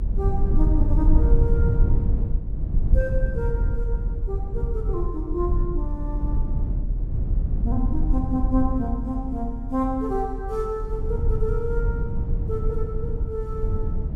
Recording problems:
rumble; below 78 Hz, SNR -4 dB

